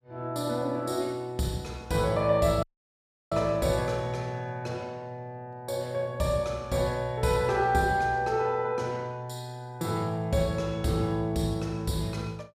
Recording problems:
audio cutting out; at 2.5 s for 0.5 s

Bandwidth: 14.5 kHz